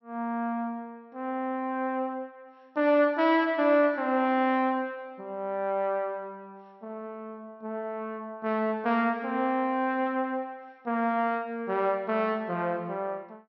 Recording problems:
low-pass filter; nothing above 5.7 kHz

